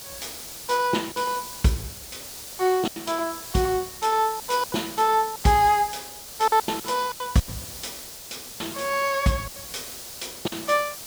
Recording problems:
background hiss; SNR 12 dB
packet loss; 10% of the sound replaced, filled with silence

